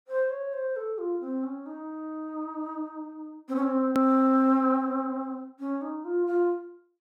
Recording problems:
edit click; at 4 s

